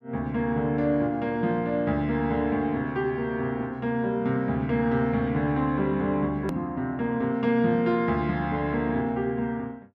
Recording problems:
click at an edit; at 6.5 s

